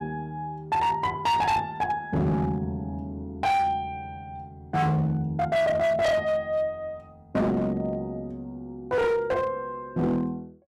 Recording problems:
distortion; hard clipping, signal-to-distortion ratio 7 dB

